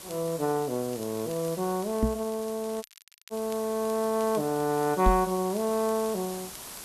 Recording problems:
background hiss; slope -2 dB per octave, SNR 13 dB
crackle; vinyl, SNR 24 dB
knock on the microphone; at 2 s and at 5 s; peak +6 dB vs average level
audio cutting out; at 3 s

